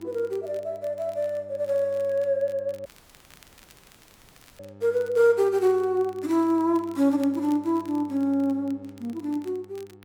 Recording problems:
hum; 50 Hz, harmonics up to 1.3 kHz, SNR 24 dB
crackling; vinyl, SNR 29 dB
dropout; at 3 s for 1.5 s

